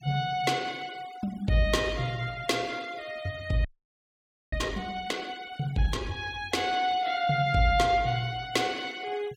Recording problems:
denoising artefacts; signal-to-artefact ratio 22 dB
audio freezing; at 3.5 s for 1 s

